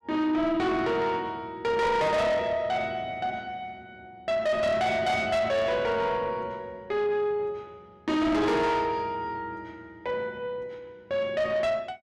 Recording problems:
distorted audio; soft clipping, signal-to-distortion ratio 8 dB

